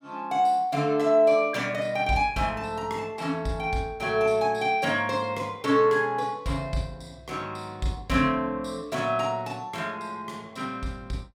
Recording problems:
none

